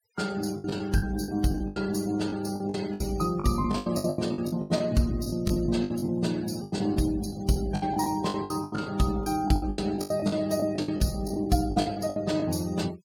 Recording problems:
noise reduction artefacts; signal-to-artefact ratio 19 dB
lost packets; 18% of the sound replaced, filled with the last packet

